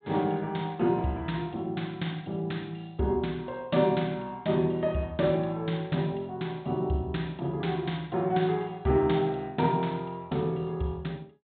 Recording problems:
low-pass filter; nothing above 4 kHz

